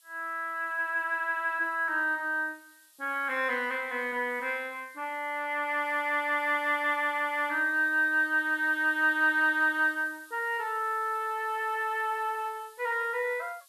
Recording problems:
hiss; SNR 27 dB

